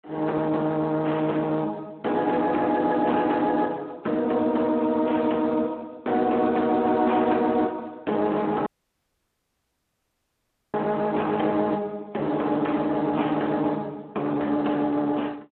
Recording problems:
phone line; 220 Hz to 3.6 kHz, Speex
distorted audio; hard clipping, signal-to-distortion ratio 13 dB
audio cutting out; at 8.5 s for 2 s

